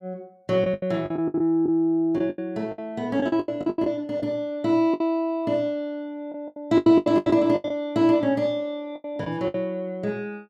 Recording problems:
lost packets; 14% of the sound replaced, filled with the last packet

